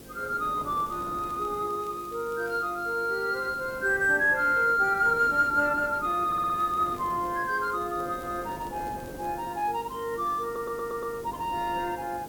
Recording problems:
hum; 50 Hz, harmonics up to 550 Hz, SNR 22 dB
background hiss; slope -2 dB per octave, SNR 22 dB
wind noise; below 590 Hz, SNR 19 dB
crackling; from 0.5 to 2.5 s and from 6.5 to 9.5 s; loose cable, SNR 30 dB
audio stuttering; at 6.5 s and at 10 s

